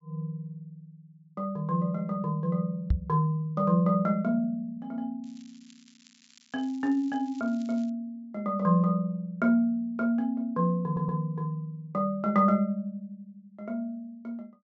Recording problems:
treble cut off; nothing above 8 kHz
knock on the microphone; at 3 s; peak +6 dB vs average level
crackling; from 5 to 8 s; loose cable, SNR 28 dB
audio stuttering; at 11 s

